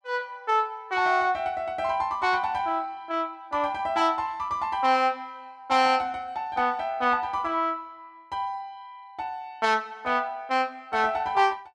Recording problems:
none

